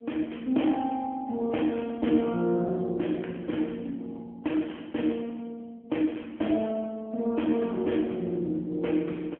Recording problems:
phone line; 190 Hz to 3.2 kHz, AMR-NB

